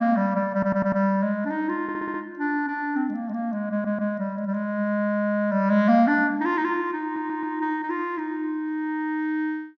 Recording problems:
treble missing; nothing above 6.5 kHz
stutter; 4 times, first at 0.5 s

